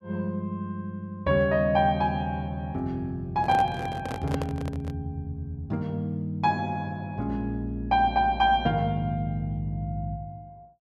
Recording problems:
microphone handling noise; from 3.5 to 5 s; peak 0 dB vs average level

